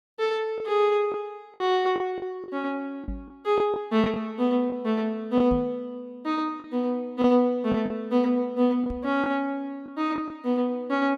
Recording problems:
lost packets; 5% of the sound replaced, filled with the last packet
knock on the microphone; at 3 s, at 5.5 s and at 9 s; peak -4 dB vs average level

